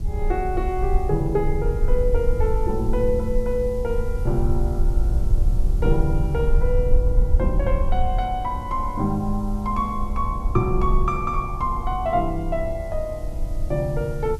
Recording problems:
background hiss; slope +1 dB per octave, SNR 27 dB
rumble; below 54 Hz, SNR 1 dB

